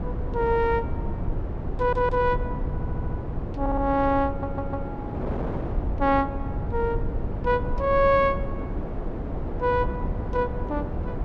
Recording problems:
low-frequency rumble; below 98 Hz, SNR 8 dB
wind on the microphone; below 600 Hz, SNR 10 dB
audio stuttering; 4 times, first at 2 s

